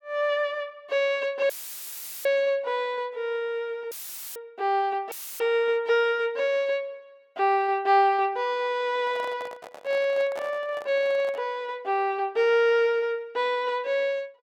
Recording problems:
dropout; at 1.5 s for 1 s, at 4 s and at 5 s; filled with static
handling noise; from 9 to 11 s; peak -7 dB vs average level

